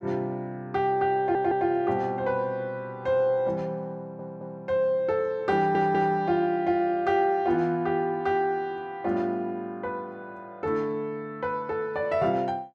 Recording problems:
stutter; at 1 s, at 4 s and at 5.5 s

